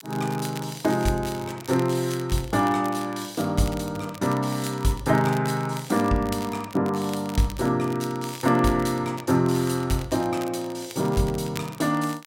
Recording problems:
crackling; vinyl, SNR 17 dB

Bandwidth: 16 kHz